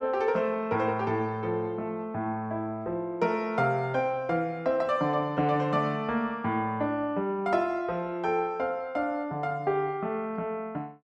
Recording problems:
none

